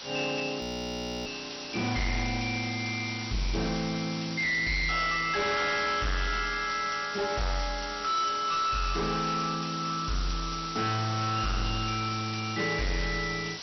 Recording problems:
lossy compression; MP2, log-spectral distance 19 dB, nothing above 5.7 kHz
distorted audio; hard clipping, signal-to-distortion ratio 8 dB
background hiss; slope +1 dB per octave, SNR 8 dB
audio freezing; at 0.5 s for 0.5 s

